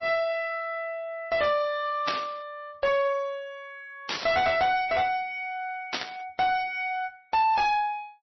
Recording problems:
lossy compression; MP3, then MP3, log-spectral distance 2 dB, nothing above 5.5 kHz
distortion; soft clipping, signal-to-distortion ratio 6 dB
burst of static; at 2 s, at 4 s and at 6 s; peak +3 dB vs average level

